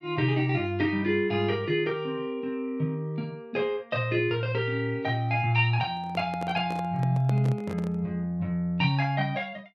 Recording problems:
microphone handling noise; from 6 to 8 s; peak -6 dB vs average level

